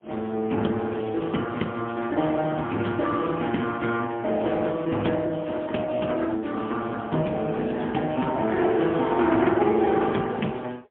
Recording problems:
telephone audio; 130 Hz to 3.4 kHz, AMR-NB, then MP3

